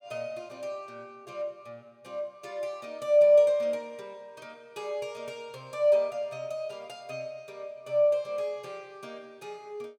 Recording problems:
none

